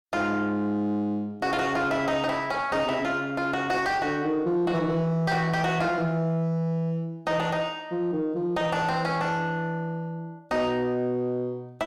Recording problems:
distorted audio; soft clipping, signal-to-distortion ratio 11 dB

